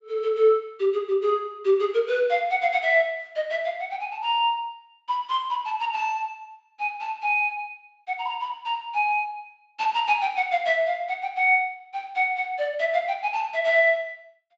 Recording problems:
treble cut off; nothing above 8 kHz

